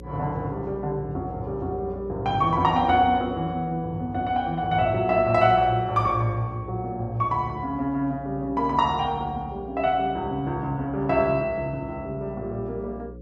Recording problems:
hum; 60 Hz, harmonics up to 540 Hz, SNR 17 dB

